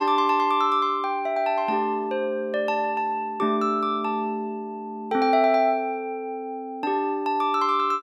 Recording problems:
none

